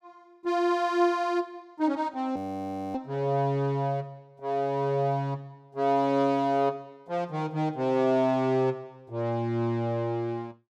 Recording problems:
frozen audio; at 2.5 s for 0.5 s

